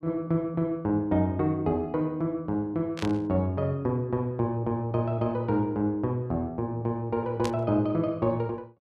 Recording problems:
static burst; at 3 s and at 7.5 s; peak -4 dB vs average level

